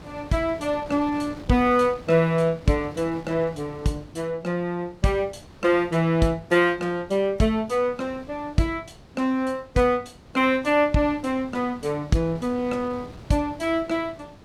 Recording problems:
wind noise; below 680 Hz, SNR 21 dB

